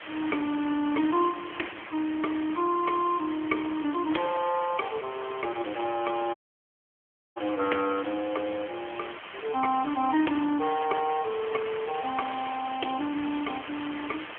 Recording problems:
telephone audio; 220 Hz to 3.3 kHz, AMR-NB
background hiss; SNR 12 dB
audio cutting out; at 6.5 s for 1 s

